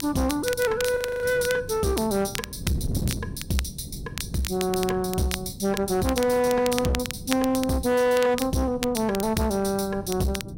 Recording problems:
distorted audio; hard clipping, uneven, signal-to-distortion ratio 10 dB
wind noise; below 220 Hz, SNR 13 dB
crackling; vinyl, SNR 11 dB
frozen audio; at 1 s

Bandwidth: 16 kHz